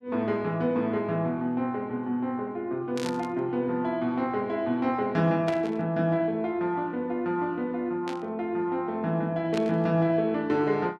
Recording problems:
static burst; 4 times, first at 3 s; peak -5 dB vs average level

